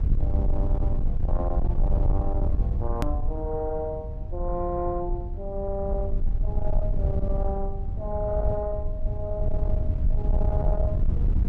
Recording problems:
distortion; soft clipping, signal-to-distortion ratio 10 dB
low-frequency rumble; below 72 Hz, SNR -4 dB
hard cut with a click; at 3 s

